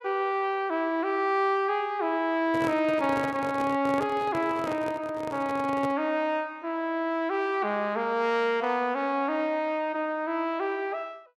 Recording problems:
microphone handling noise; from 2.5 to 6 s; peak -3 dB vs average level

